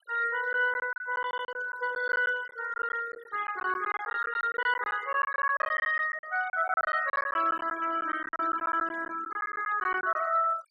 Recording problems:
denoising artefacts; signal-to-artefact ratio 16 dB
lost packets; 14% of the sound replaced, filled with silence

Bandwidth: 14 kHz